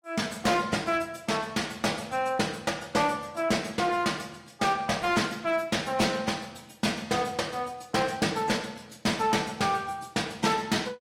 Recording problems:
lossy compression; AAC, log-spectral distance 4 dB, nothing above 16 kHz
distorted audio; hard clipping, uneven, signal-to-distortion ratio 11 dB

